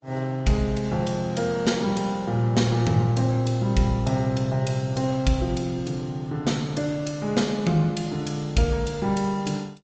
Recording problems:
treble cut off; nothing above 7.6 kHz
codec artefacts; Opus, log-spectral distance 3 dB

